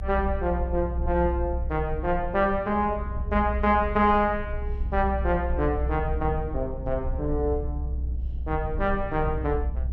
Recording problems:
rumble; below 64 Hz, strongest tone 62 Hz, SNR 5 dB

